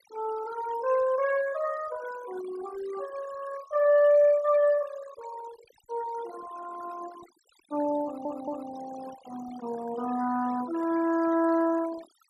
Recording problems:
denoising artefacts; signal-to-artefact ratio 18 dB
stutter; at 8 s

